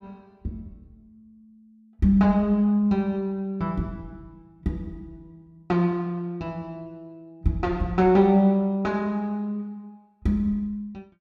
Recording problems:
none

